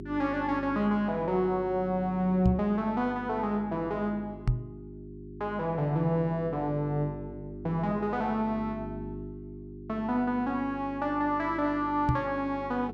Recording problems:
electrical hum; 50 Hz, harmonics up to 400 Hz, SNR 13 dB
knock on the microphone; at 2.5 s, at 4.5 s and at 12 s; peak +7 dB vs average level

